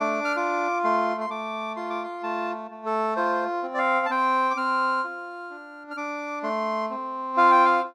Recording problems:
none

